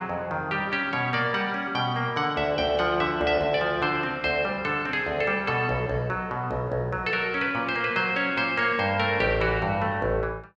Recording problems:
none

